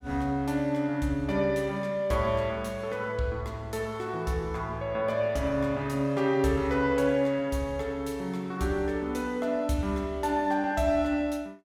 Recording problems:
none

